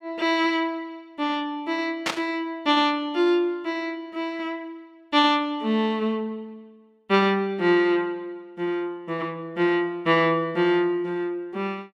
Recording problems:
burst of static; at 2 s; peak +3 dB vs average level

